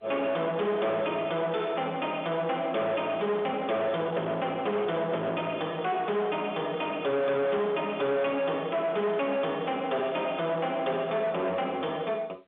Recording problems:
telephone audio; 280 Hz to 3.4 kHz, G.711
distortion; soft clipping, signal-to-distortion ratio 7 dB

